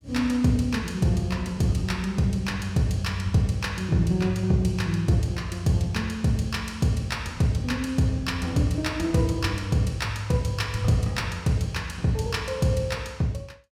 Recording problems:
none

